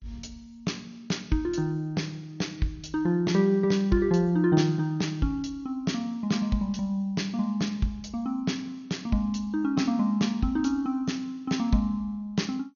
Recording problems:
lossy codec; MP2, log-spectral distance 2 dB, nothing above 6.7 kHz

